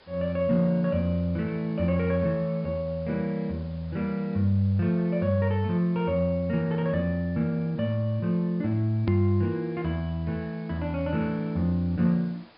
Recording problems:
treble missing; nothing above 5.1 kHz
background hiss; SNR 28 dB
edit click; at 9 s

